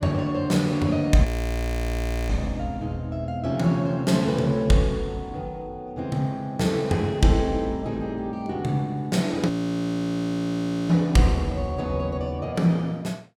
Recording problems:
frozen audio; at 1.5 s for 1 s and at 9.5 s for 1.5 s

